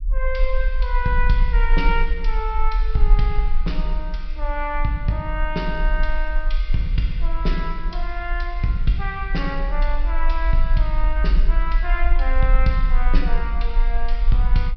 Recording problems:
treble missing; nothing above 5.5 kHz
low-frequency rumble; below 40 Hz, strongest tone 22 Hz, SNR -2 dB

